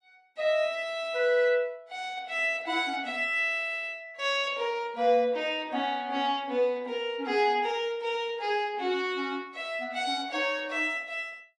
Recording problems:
lossy codec; AAC, log-spectral distance 2 dB, nothing above 10.7 kHz

